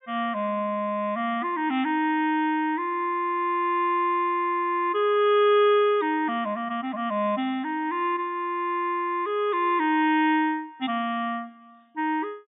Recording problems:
treble missing; nothing above 3.7 kHz

